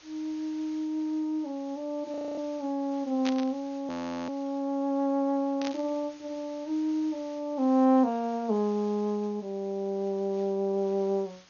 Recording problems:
codec artefacts; MP2, log-spectral distance 3 dB, nothing above 6.7 kHz
background hiss; slope +1 dB per octave, SNR 25 dB
audio freezing; at 2 s and at 4 s
burst of static; at 3 s and at 5.5 s; peak -2 dB vs average level

